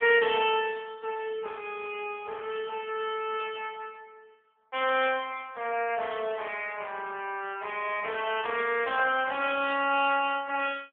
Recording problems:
telephone audio; 300 Hz to 3.4 kHz, AMR-NB

